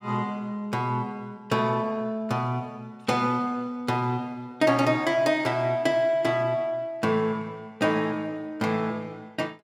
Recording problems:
none

